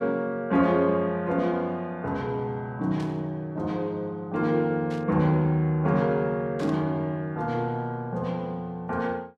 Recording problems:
static burst; at 3 s, at 5 s and at 6.5 s; peak -14 dB vs average level

